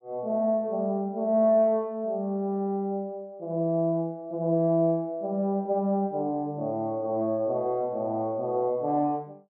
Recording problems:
none

